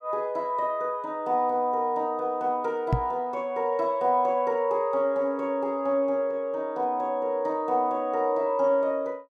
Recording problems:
microphone thump; at 3 s; peak +5 dB vs average level

